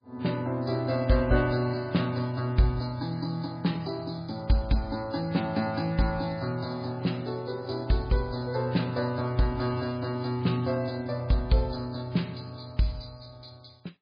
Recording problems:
codec artefacts; MP3, log-spectral distance 6 dB, nothing above 4.2 kHz

